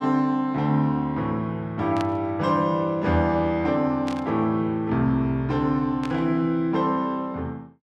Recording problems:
burst of static; at 2 s, at 4 s and at 6 s; peak -7 dB vs average level

